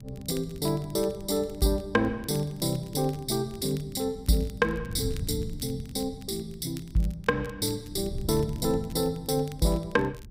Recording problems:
wind on the microphone; below 140 Hz, SNR 13 dB
crackle; vinyl, SNR 24 dB

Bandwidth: 15.5 kHz